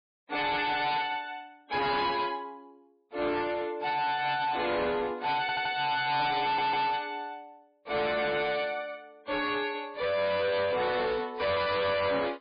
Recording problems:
lossy compression; MP3, log-spectral distance 4 dB, nothing above 4.8 kHz
distortion; hard clipping, uneven, signal-to-distortion ratio 7 dB
audio stuttering; at 5.5 s and at 6.5 s

